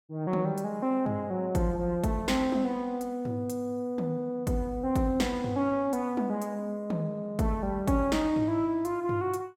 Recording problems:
none

